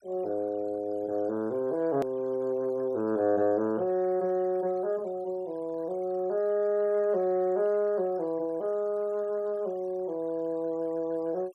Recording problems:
denoising artefacts; signal-to-artefact ratio 27 dB
hard cut with a click; at 2 s

